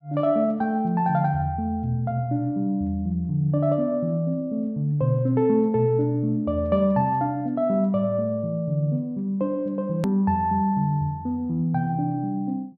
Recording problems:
edit click; at 10 s

